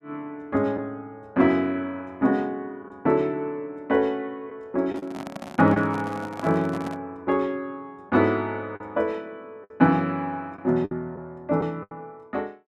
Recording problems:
lost packets; 3% of the sound replaced, filled with the last packet
microphone handling noise; from 5 to 7 s; peak -6 dB vs average level

